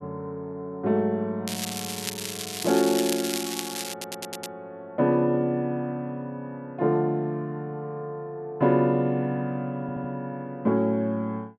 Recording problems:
crackling; from 1.5 to 4.5 s; loose cable, SNR 5 dB
stutter; at 4 s and at 10 s

